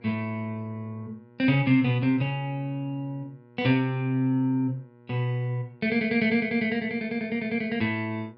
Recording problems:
hum; 60 Hz, harmonics up to 1.9 kHz, SNR 27 dB

